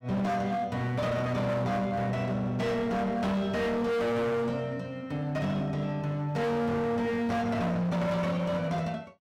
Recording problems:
distortion; hard clipping, signal-to-distortion ratio 7 dB

